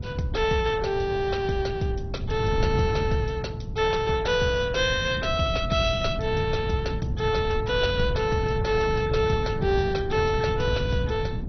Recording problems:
codec artefacts; MP2, log-spectral distance 3 dB, nothing above 6 kHz
wind noise; below 150 Hz, SNR 6 dB

